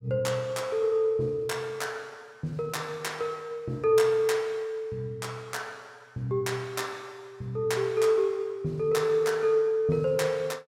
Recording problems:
none

